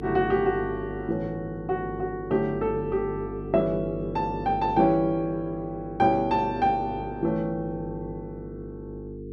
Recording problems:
hum; 50 Hz, harmonics up to 450 Hz, SNR 10 dB

